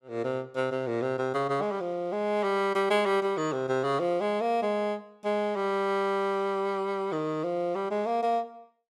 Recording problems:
none

